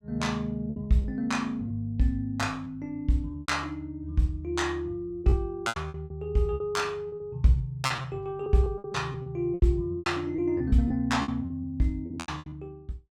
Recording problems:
lost packets; 12% of the sound replaced, filled with repeated pitch periods

